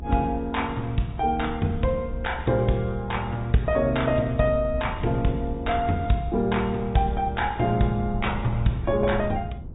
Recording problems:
treble missing; nothing above 3.8 kHz
lossy compression; AAC, log-spectral distance 2 dB
rumble; below 96 Hz, SNR 11 dB

